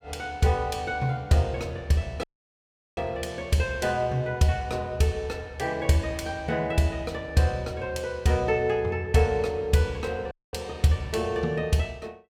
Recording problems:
dropout; at 2 s for 0.5 s and at 10 s

